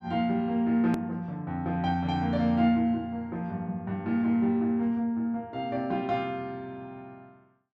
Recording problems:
edit click; at 1 s

